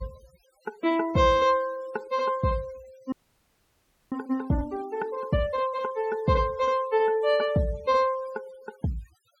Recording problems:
noise reduction artefacts; signal-to-artefact ratio 24 dB
audio freezing; at 3 s for 1 s

